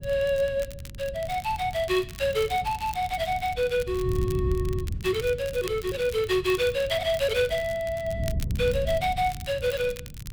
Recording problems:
wind noise; below 130 Hz, SNR 9 dB
crackling; vinyl, SNR 18 dB

